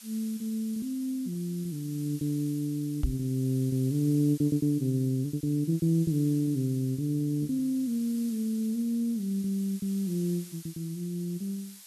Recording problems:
background hiss; slope +4 dB per octave, SNR 18 dB
lost packets; 10% of the sound replaced, filled with repeated pitch periods
knock on the microphone; at 3 s; peak +4 dB vs average level

